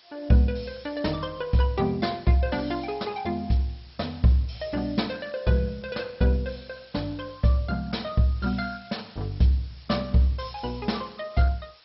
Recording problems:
codec artefacts; MP2, log-spectral distance 11 dB, nothing above 5.5 kHz
background hiss; slope +2 dB per octave, SNR 26 dB

